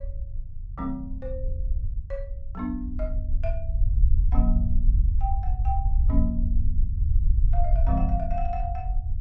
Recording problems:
rumble; below 62 Hz, SNR -7 dB

